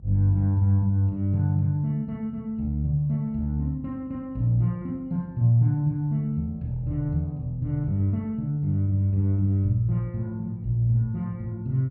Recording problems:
electrical hum; 50 Hz, harmonics up to 400 Hz, SNR 24 dB

